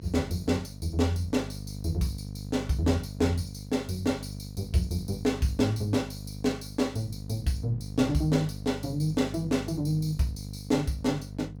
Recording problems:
electrical hum; 50 Hz, harmonics up to 550 Hz, SNR 11 dB

